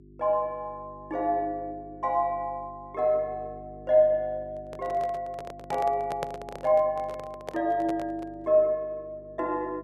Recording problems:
electrical hum; 50 Hz, harmonics up to 400 Hz, SNR 21 dB
microphone handling noise; from 4.5 to 8.5 s; peak -1 dB vs average level

